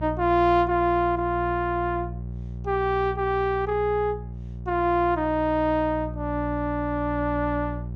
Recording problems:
electrical hum; 60 Hz, harmonics up to 540 Hz, SNR 10 dB

